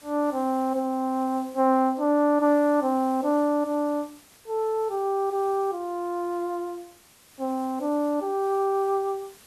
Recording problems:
hiss; slope -1 dB per octave, SNR 26 dB

